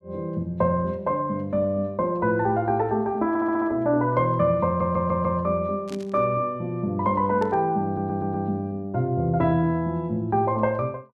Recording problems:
audio stuttering; at 3.5 s, at 4.5 s and at 8 s
burst of static; at 6 s and at 7.5 s; peak -14 dB vs average level

